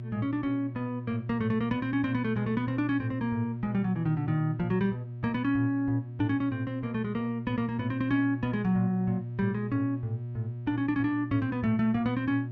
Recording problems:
hum; 60 Hz, harmonics up to 360 Hz, SNR 8 dB

